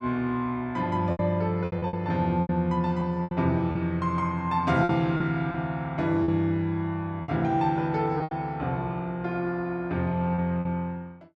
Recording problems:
lost packets; 7% of the sound replaced, filled with repeated pitch periods

